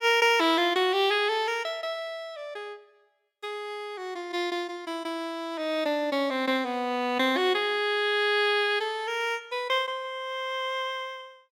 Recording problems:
none

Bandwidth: 16 kHz